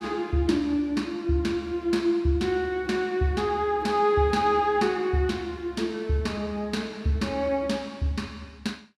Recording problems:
none

